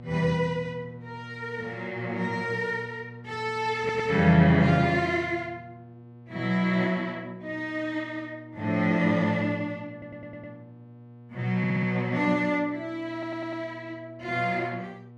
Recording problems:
hum; 60 Hz, harmonics up to 1.1 kHz, SNR 19 dB
audio stuttering; 4 times, first at 4 s

